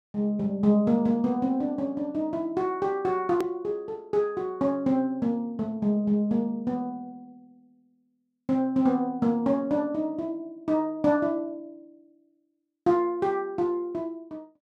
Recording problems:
click at an edit; at 3.5 s

